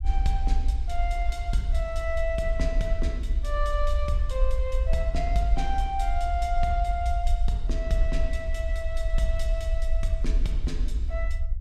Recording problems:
low-frequency rumble; below 54 Hz, SNR -3 dB

